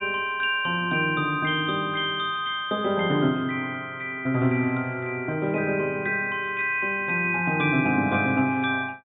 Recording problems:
treble missing; nothing above 4 kHz

